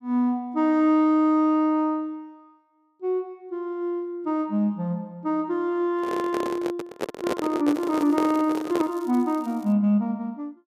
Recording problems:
microphone handling noise; from 6 to 9 s; peak +1 dB vs average level
crackling; from 7.5 to 9.5 s; loose cable, SNR 28 dB

